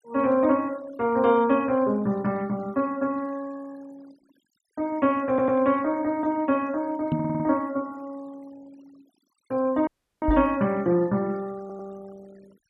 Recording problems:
noise reduction artefacts; signal-to-artefact ratio 25 dB
stutter; at 5.5 s, at 7 s and at 12 s
microphone bump; at 7 s and at 10 s; peak +2 dB vs average level
audio cutting out; at 10 s

